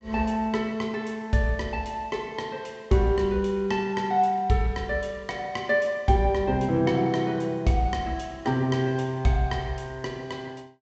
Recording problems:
treble missing; nothing above 8 kHz

